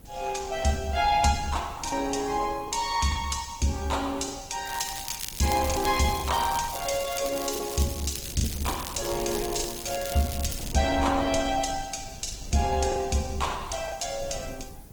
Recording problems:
lossy compression; Opus, log-spectral distance 6 dB
hiss; SNR 27 dB
wind noise; below 160 Hz, SNR 16 dB
lost packets; 4% of the sound replaced, filled with the last packet
crackle; from 4.5 to 11 s; loose cable, SNR 9 dB

